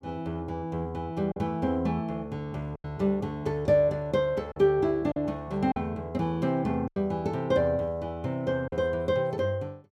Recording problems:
lost packets; 4% of the sound replaced, filled with silence

